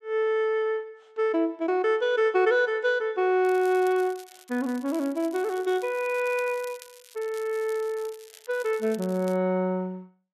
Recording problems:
crackling; from 3.5 to 9.5 s; loose cable, SNR 22 dB

